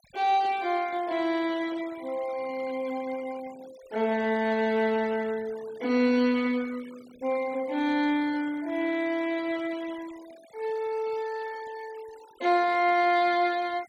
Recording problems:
denoising artefacts; signal-to-artefact ratio 22 dB

